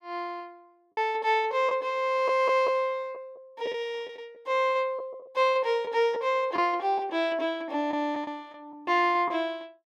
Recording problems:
packet loss; 5% of the sound replaced, filled with the last packet

